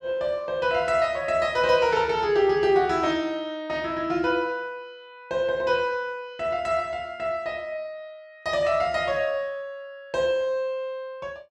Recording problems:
none

